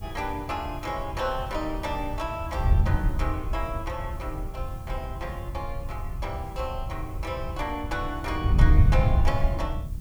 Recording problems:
background hiss; SNR 22 dB
wind on the microphone; below 92 Hz, SNR -3 dB

